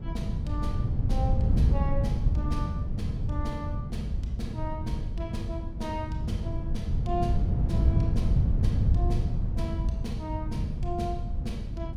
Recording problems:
wind noise; below 120 Hz, SNR -8 dB

